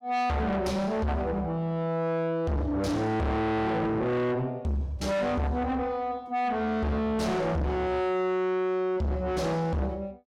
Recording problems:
distorted audio; soft clipping, signal-to-distortion ratio 6 dB

